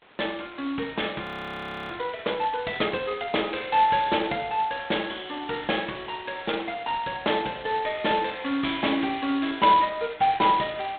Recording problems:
phone line; 280 Hz to 3.9 kHz, G.726
hiss; SNR 27 dB
audio freezing; at 1 s for 0.5 s

